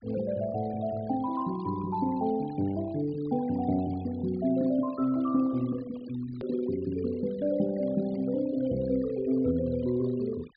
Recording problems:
treble missing; nothing above 4.9 kHz
noise reduction artefacts; signal-to-artefact ratio 20 dB
edit click; at 6.5 s

